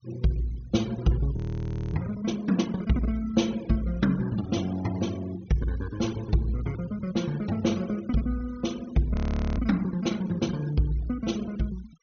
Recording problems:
treble missing; nothing above 6.5 kHz
noise reduction artefacts; signal-to-artefact ratio 20 dB
frozen audio; at 1.5 s for 0.5 s and at 9 s

